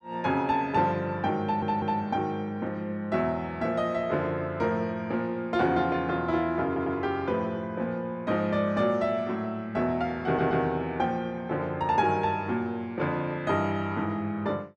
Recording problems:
audio stuttering; at 1.5 s, at 6.5 s and at 10 s

